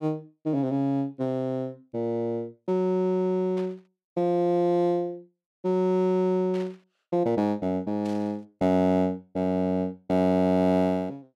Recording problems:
burst of static; at 3.5 s, at 6.5 s and at 8 s; peak -14 dB vs average level

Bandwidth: 13.5 kHz